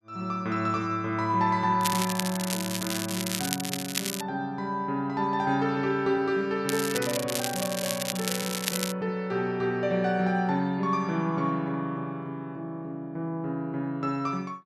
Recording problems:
crackling; from 2 to 4 s and from 6.5 to 9 s; loose cable, SNR 3 dB

